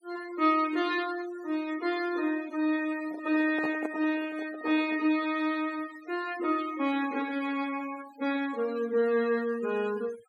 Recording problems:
noise reduction artefacts; signal-to-artefact ratio 18 dB
handling noise; from 3 to 5 s; peak -3 dB vs average level

